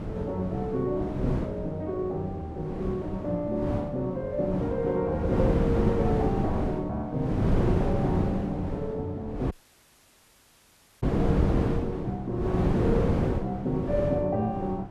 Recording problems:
wind noise; below 350 Hz, SNR 0 dB
audio cutting out; at 9.5 s for 1.5 s

